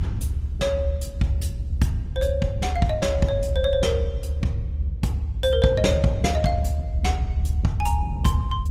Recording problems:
lossy codec; Opus, log-spectral distance 2 dB
low-frequency rumble; below 76 Hz, strongest tone 72 Hz, SNR 2 dB
wind on the microphone; below 180 Hz, SNR 13 dB

